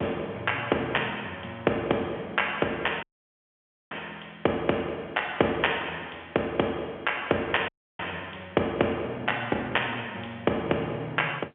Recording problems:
phone line; 280 Hz to 3.3 kHz, G.711
audio cutting out; at 3 s for 1 s and at 7.5 s

